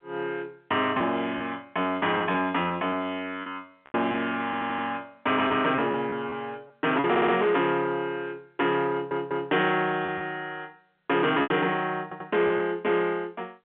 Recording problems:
phone line; 190 Hz to 3.4 kHz, G.711
distorted audio; soft clipping, signal-to-distortion ratio 11 dB
lost packets; 5% of the sound replaced, filled with repeated pitch periods
stutter; 4 times, first at 4.5 s

